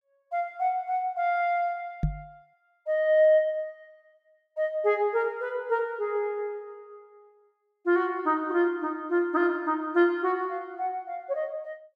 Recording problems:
microphone thump; at 2 s; peak +3 dB vs average level

